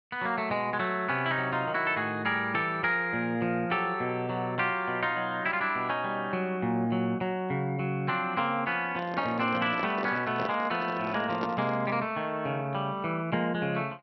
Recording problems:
treble cut off; nothing above 5.7 kHz
handling noise; from 9 to 12 s; peak -1 dB vs average level

